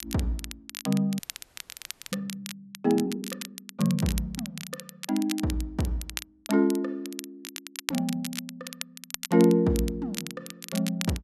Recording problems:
crackling; vinyl, SNR 11 dB
frozen audio; at 1 s for 1 s

